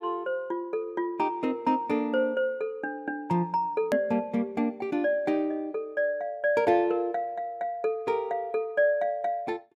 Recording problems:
edit click; at 4 s

